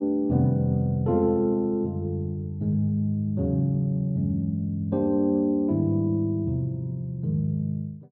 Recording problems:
none

